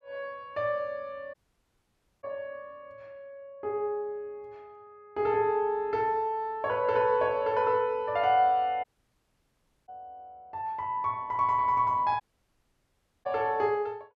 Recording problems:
dropout; at 1.5 s for 1 s, at 9 s for 1 s and at 12 s for 1 s

